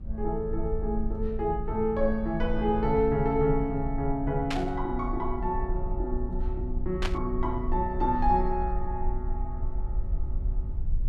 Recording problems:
rumble; below 56 Hz, SNR 5 dB
static burst; at 4.5 s and at 7 s; peak +1 dB vs average level

